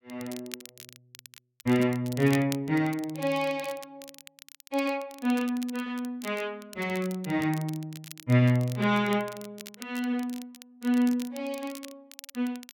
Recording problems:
crackling; vinyl, SNR 18 dB

